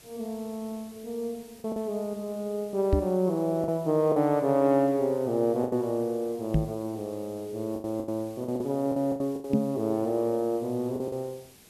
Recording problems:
background hiss; SNR 24 dB
lost packets; 7% of the sound replaced, filled with the last packet
microphone bump; at 3 s, at 6.5 s and at 9.5 s; peak +7 dB vs average level

